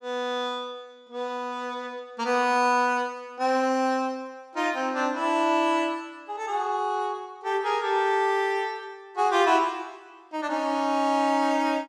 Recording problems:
none

